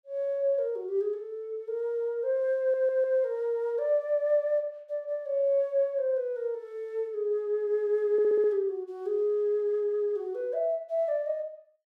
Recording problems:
stutter; at 2.5 s and at 8 s

